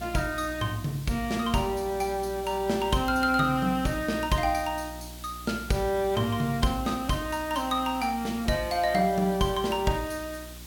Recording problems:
hum; 60 Hz, harmonics up to 360 Hz, SNR 17 dB
hiss; slope 0 dB per octave, SNR 17 dB

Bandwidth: 17 kHz